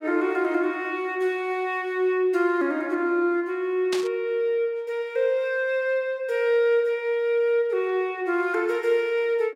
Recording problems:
burst of static; at 4 s; peak -2 dB vs average level

